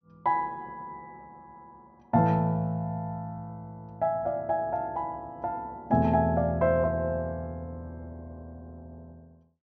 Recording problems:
treble missing; nothing above 5.9 kHz

